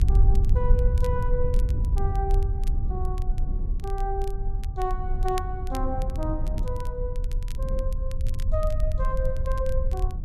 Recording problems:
rumble; below 62 Hz, SNR -5 dB
wind on the microphone; below 150 Hz, SNR 6 dB
crackle; vinyl, SNR 17 dB

